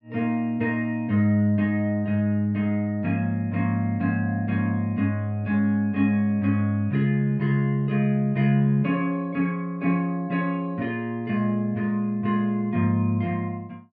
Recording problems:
none

